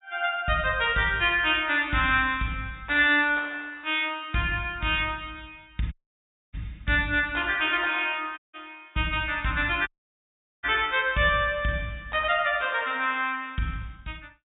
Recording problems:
treble cut off; nothing above 4 kHz
dropout; at 6 s for 0.5 s, at 8.5 s and at 10 s for 1 s

